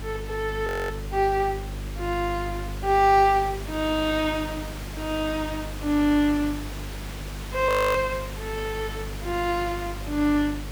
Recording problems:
electrical hum; 50 Hz, harmonics up to 550 Hz, SNR 11 dB
background hiss; slope -3 dB per octave, SNR 14 dB
frozen audio; at 0.5 s and at 7.5 s

